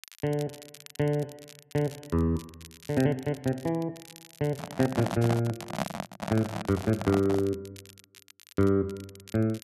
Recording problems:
crackle; vinyl, SNR 20 dB
handling noise; from 4.5 to 7.5 s; peak +3 dB vs average level

